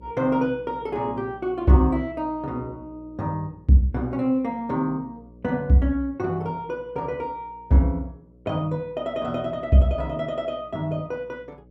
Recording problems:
hum; 60 Hz, harmonics up to 600 Hz, SNR 25 dB

